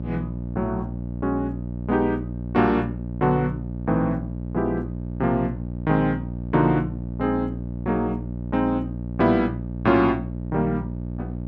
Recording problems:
hum; 60 Hz, harmonics up to 660 Hz, SNR 7 dB

